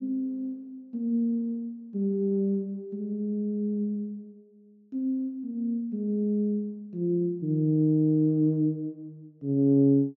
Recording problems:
none

